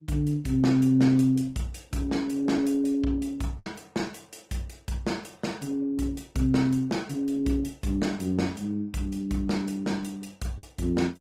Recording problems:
lossy codec; Opus, log-spectral distance 3 dB, nothing above 18.3 kHz
packet loss; 1.3% of the sound replaced, filled with the last packet

